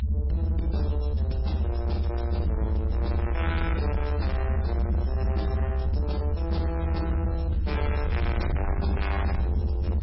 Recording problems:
codec artefacts; MP3, log-spectral distance 2 dB, nothing above 5.5 kHz
distortion; soft clipping, signal-to-distortion ratio 11 dB
rumble; below 80 Hz, strongest tone 64 Hz, SNR -5 dB

